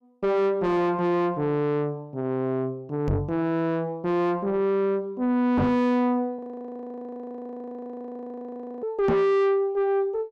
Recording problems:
distorted audio; soft clipping, signal-to-distortion ratio 5 dB
microphone thump; at 3 s, at 5.5 s and at 9 s; peak +5 dB vs average level
frozen audio; at 6.5 s for 2.5 s

